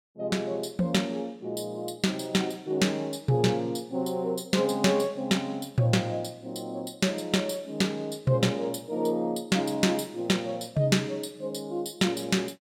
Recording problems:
none

